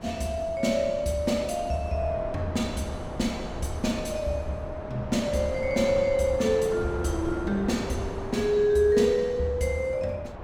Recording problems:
wind on the microphone; below 710 Hz, SNR 11 dB

